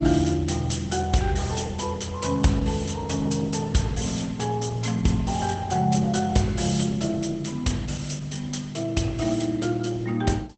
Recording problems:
lossy compression; Opus, log-spectral distance 7 dB, nothing above 8.2 kHz

